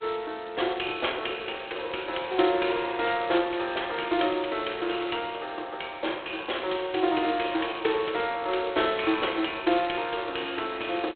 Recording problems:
telephone audio; 280 Hz to 3.9 kHz, G.726

